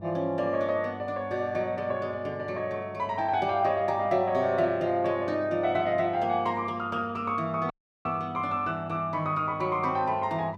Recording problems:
hum; 50 Hz, harmonics up to 900 Hz, SNR 18 dB
audio cutting out; at 7.5 s

